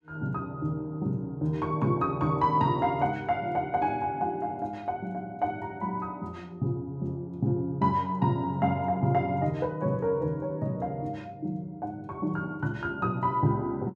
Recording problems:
none

